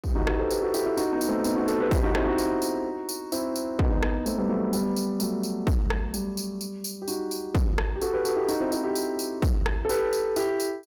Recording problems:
distorted audio; soft clipping, signal-to-distortion ratio 7 dB

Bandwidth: 18 kHz